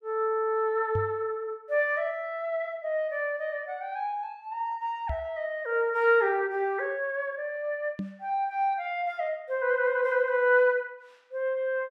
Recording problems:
microphone bump; at 1 s, at 5 s and at 8 s; peak -1 dB vs average level

